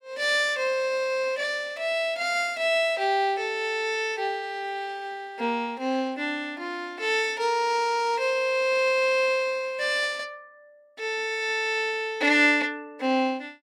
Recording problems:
none

